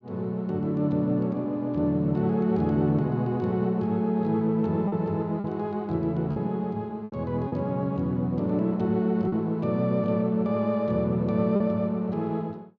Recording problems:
packet loss; 3% of the sound replaced, filled with repeated pitch periods

